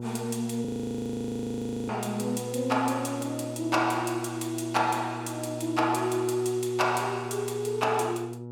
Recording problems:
hum; 60 Hz, harmonics up to 960 Hz, SNR 10 dB
frozen audio; at 0.5 s for 1 s

